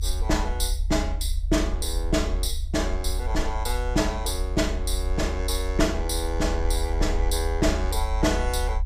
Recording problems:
rumble; below 70 Hz, strongest tone 40 Hz, SNR 2 dB

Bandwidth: 15.5 kHz